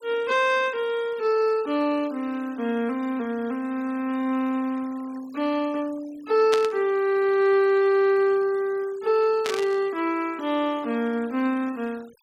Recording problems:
noise reduction artefacts; signal-to-artefact ratio 24 dB
burst of static; at 6.5 s and at 9.5 s; peak 0 dB vs average level

